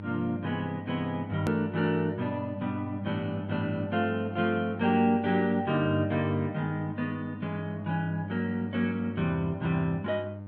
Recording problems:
electrical hum; 50 Hz, harmonics up to 900 Hz, SNR 10 dB
edit click; at 1.5 s

